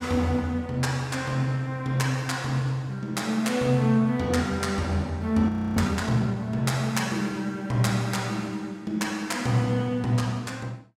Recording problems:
frozen audio; at 5.5 s

